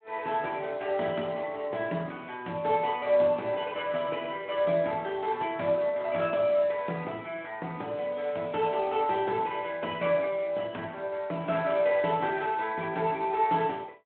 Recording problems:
telephone audio; 220 Hz to 3.5 kHz, Speex

